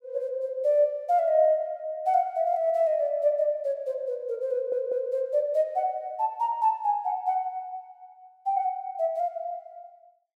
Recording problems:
audio stuttering; at 4.5 s

